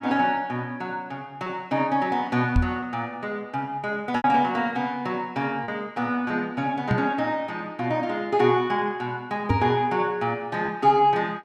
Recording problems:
packet loss; 1.8% of the sound replaced, filled with repeated pitch periods
microphone thump; at 2.5 s, at 7 s and at 9.5 s; peak +5 dB vs average level

